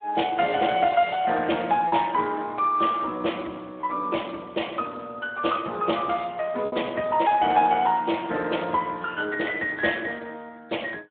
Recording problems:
telephone audio; 260 Hz to 3.5 kHz, Speex
packet loss; 1.4% of the sound replaced, filled with repeated pitch periods

